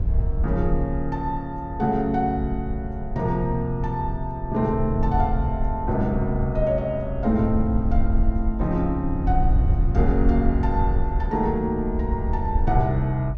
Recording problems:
wind on the microphone; below 74 Hz, SNR 2 dB

